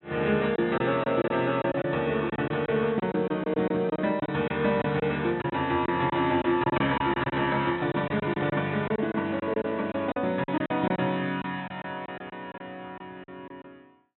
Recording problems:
treble missing; nothing above 3.9 kHz
lost packets; 10% of the sound replaced, filled with silence
crackle; at 7.5 s; loose cable, SNR 27 dB

